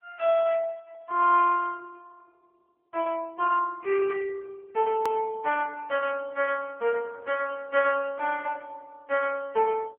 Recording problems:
telephone audio; 370 Hz to 3.2 kHz, AMR-NB
edit click; at 5 s

